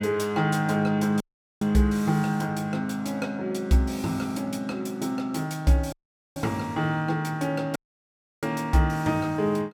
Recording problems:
dropout; at 1 s, at 6 s and at 8 s for 0.5 s

